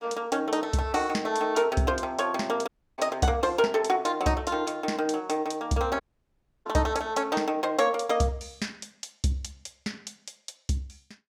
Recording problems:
audio cutting out; at 2.5 s and at 6 s for 0.5 s

